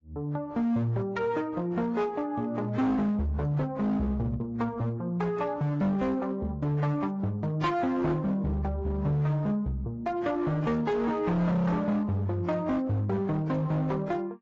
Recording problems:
lossy compression; AAC, then AAC, log-spectral distance 2 dB, nothing above 7.3 kHz
distortion; hard clipping, signal-to-distortion ratio 11 dB

